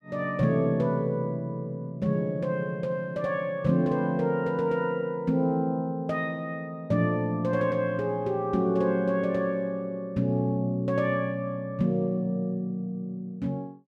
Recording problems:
none

